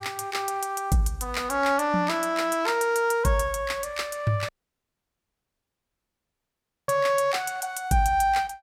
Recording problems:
dropout; at 4.5 s for 2.5 s

